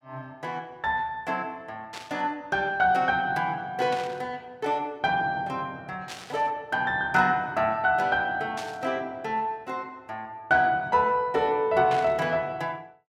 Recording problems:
burst of static; 5 times, first at 2 s; peak -6 dB vs average level

